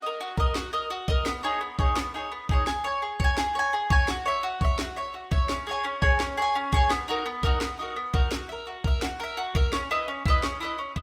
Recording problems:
lossy compression; Opus, log-spectral distance 3 dB, nothing above 19 kHz

